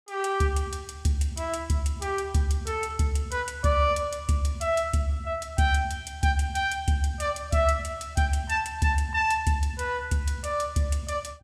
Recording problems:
none

